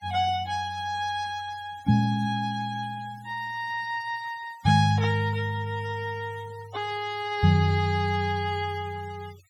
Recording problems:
denoising artefacts; signal-to-artefact ratio 21 dB

